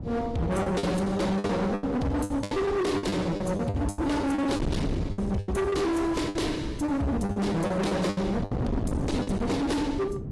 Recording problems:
lossy compression; AAC, log-spectral distance 2 dB, nothing above 11.3 kHz
distorted audio; hard clipping, signal-to-distortion ratio 6 dB
wind noise; below 300 Hz, SNR 7 dB
packet loss; 13% of the sound replaced, filled with the last packet

